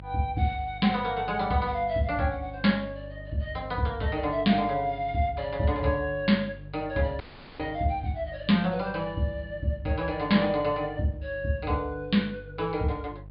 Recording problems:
treble cut off; nothing above 4.9 kHz
hum; 50 Hz, harmonics up to 500 Hz, SNR 16 dB
audio cutting out; at 7 s

